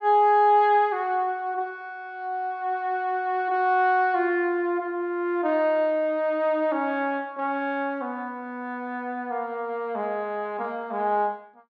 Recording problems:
none

